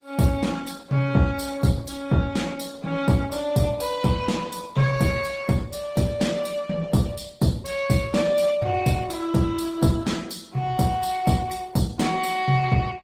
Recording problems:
lossy compression; Opus, then Opus, log-spectral distance 4 dB

